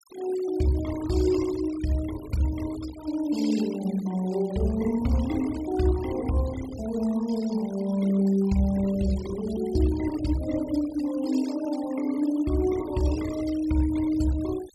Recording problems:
denoising artefacts; signal-to-artefact ratio 18 dB

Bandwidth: 14 kHz